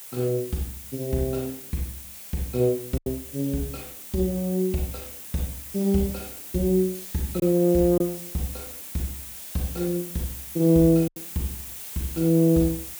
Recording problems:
hiss; slope 0 dB per octave, SNR 11 dB
lost packets; 2% of the sound replaced, filled with silence

